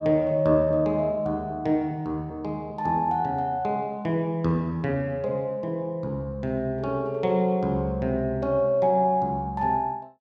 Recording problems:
none

